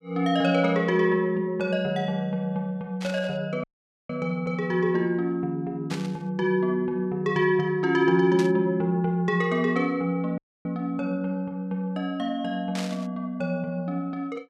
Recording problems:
static burst; 4 times, first at 3 s; peak -5 dB vs average level
dropout; at 3.5 s and at 10 s

